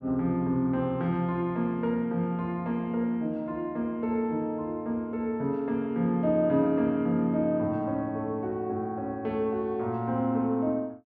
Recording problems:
none

